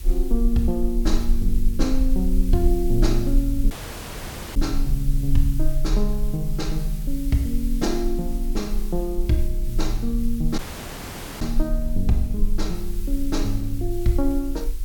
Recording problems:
hum; 50 Hz, harmonics up to 400 Hz, SNR 27 dB
hiss; slope +3 dB per octave, SNR 17 dB
low-frequency rumble; below 38 Hz, strongest tone 22 Hz, SNR 2 dB
audio cutting out; at 3.5 s for 1 s and at 11 s for 1 s

